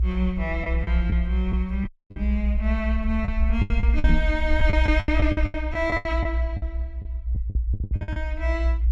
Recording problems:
low-frequency rumble; below 64 Hz, strongest tone 58 Hz, SNR -2 dB
packet loss; 12% of the sound replaced, filled with the last packet
audio cutting out; at 2 s
microphone thump; at 2 s and at 4 s; peak +7 dB vs average level

